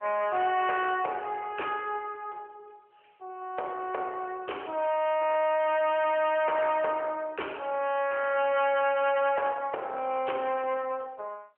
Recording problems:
phone line; 340 Hz to 3.2 kHz, AMR-NB
distortion; soft clipping, signal-to-distortion ratio 10 dB

